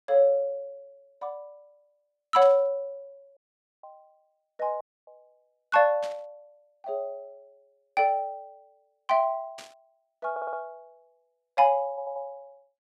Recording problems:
burst of static; at 2.5 s, at 6 s and at 9.5 s; peak -12 dB vs average level
dropout; at 3.5 s and at 5 s
audio stuttering; at 10 s and at 12 s

